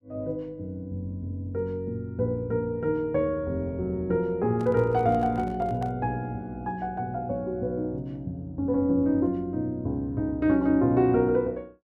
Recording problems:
microphone handling noise; from 4.5 to 6 s; peak -12 dB vs average level

